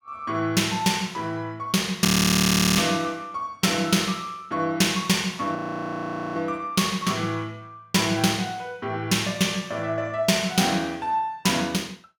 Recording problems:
audio freezing; at 2 s for 0.5 s and at 5.5 s for 1 s

